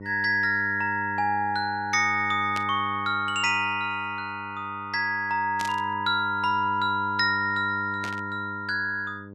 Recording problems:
hum; 50 Hz, harmonics up to 900 Hz, SNR 14 dB
burst of static; at 2.5 s, at 5.5 s and at 8 s; peak -5 dB vs average level

